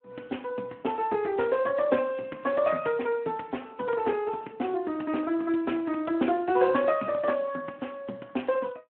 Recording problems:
phone line; 190 Hz to 3.1 kHz, Speex

